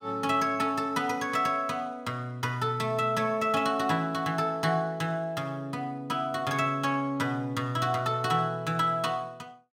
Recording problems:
none

